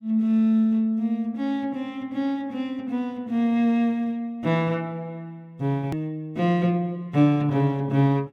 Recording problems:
click at an edit; at 6 s

